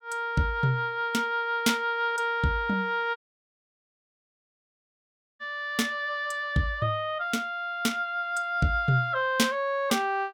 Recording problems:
dropout; at 3 s for 2 s

